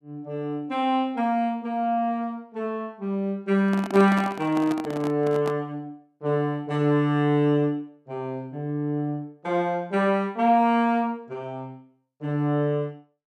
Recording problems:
microphone handling noise; from 3.5 to 5.5 s; peak -4 dB vs average level

